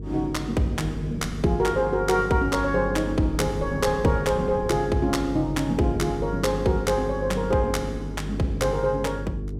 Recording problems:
hum; 50 Hz, harmonics up to 450 Hz, SNR 9 dB
wind on the microphone; below 270 Hz, SNR 17 dB

